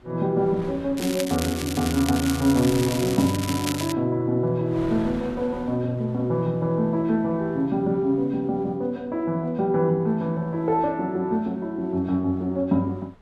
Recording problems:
wind on the microphone; below 1 kHz, SNR 21 dB
crackle; from 1 to 4 s; loose cable, SNR 9 dB

